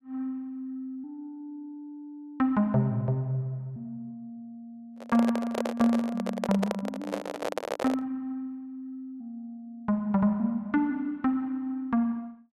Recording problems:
microphone handling noise; from 5 to 8 s; peak +3 dB vs average level

